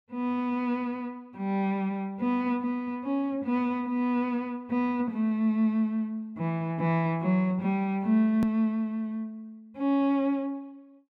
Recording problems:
edit click; at 8.5 s

